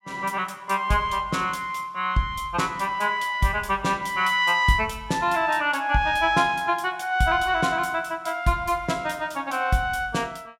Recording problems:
none

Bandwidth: 16 kHz